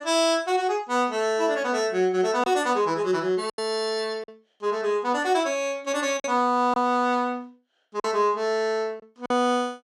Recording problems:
lost packets; 3% of the sound replaced, filled with silence

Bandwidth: 14.5 kHz